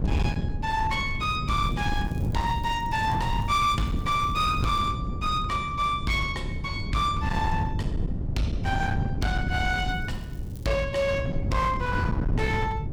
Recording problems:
distortion; hard clipping, signal-to-distortion ratio 12 dB
wind noise; below 180 Hz, SNR 3 dB
crackling; from 1.5 to 5 s and at 10 s; loose cable, SNR 28 dB

